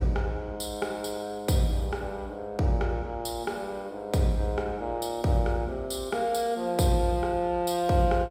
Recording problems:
none

